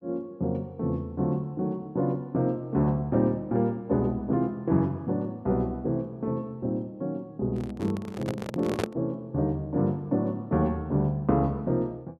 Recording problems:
microphone handling noise; from 7.5 to 9 s; peak +3 dB vs average level

